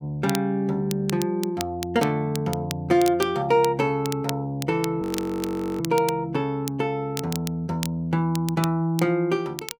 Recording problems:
crackle; vinyl, SNR 13 dB
frozen audio; at 5 s for 1 s

